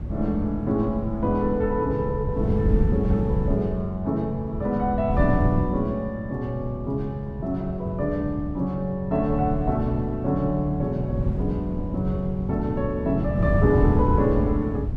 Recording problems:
wind on the microphone; below 160 Hz, SNR 3 dB

